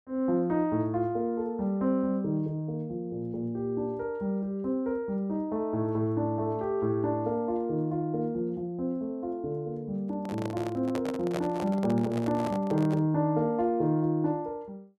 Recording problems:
microphone handling noise; from 10 to 13 s; peak -1 dB vs average level

